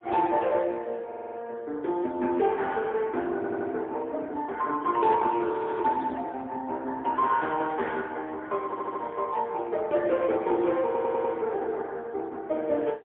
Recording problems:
phone line; 240 Hz to 2.8 kHz, AMR-NB, then MP3
stutter; 4 times, first at 1 s
audio freezing; at 5.5 s

